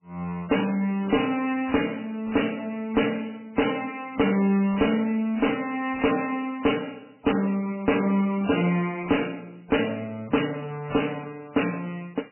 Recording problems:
codec artefacts; MP3, log-spectral distance 6 dB, nothing above 3 kHz
distortion; hard clipping, uneven, signal-to-distortion ratio 11 dB

